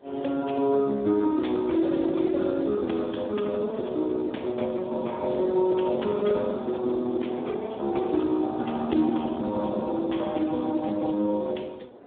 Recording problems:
telephone audio; 220 Hz to 3.6 kHz, Speex
wind noise; below 640 Hz, SNR 23 dB

